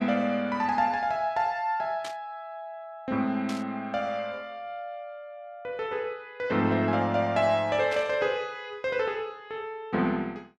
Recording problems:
static burst; at 2 s, at 3.5 s and at 8 s; peak -6 dB vs average level

